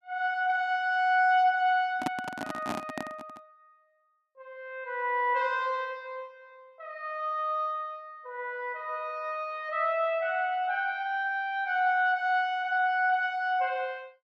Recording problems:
microphone handling noise; from 2 to 3.5 s; peak +1 dB vs average level

